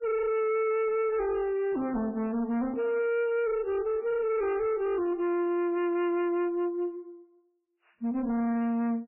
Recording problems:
lossy codec; MP3, log-spectral distance 2 dB, nothing above 2.8 kHz
distortion; hard clipping, uneven, signal-to-distortion ratio 7 dB

